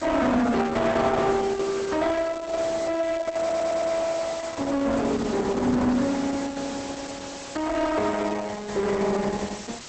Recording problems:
lossy compression; Opus, log-spectral distance 8 dB, nothing above 8.2 kHz
distorted audio; soft clipping, signal-to-distortion ratio 7 dB
background hiss; SNR 11 dB
stutter; at 3.5 s

